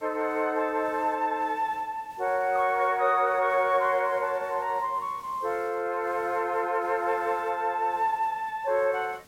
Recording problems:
hiss; slope -3 dB per octave, SNR 27 dB

